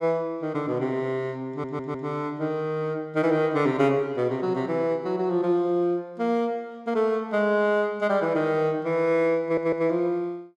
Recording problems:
stutter; at 1.5 s and at 9.5 s

